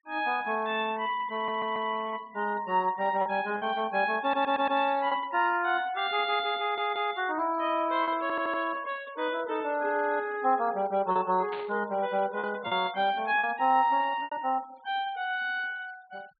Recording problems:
low-pass filter; nothing above 4.4 kHz
denoising artefacts; signal-to-artefact ratio 24 dB
lost packets; 3% of the sound replaced, filled with repeated pitch periods
stutter; 4 times, first at 1.5 s
static burst; at 12 s; peak -9 dB vs average level

